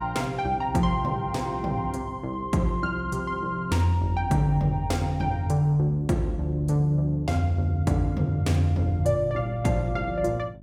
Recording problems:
mains hum; 50 Hz, harmonics up to 600 Hz, SNR 22 dB

